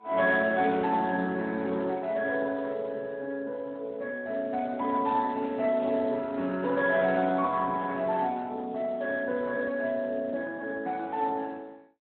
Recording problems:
telephone audio; 260 Hz to 3.4 kHz, Speex

